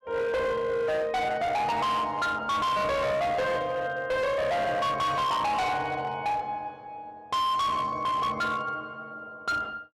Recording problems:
distortion; hard clipping, signal-to-distortion ratio 8 dB

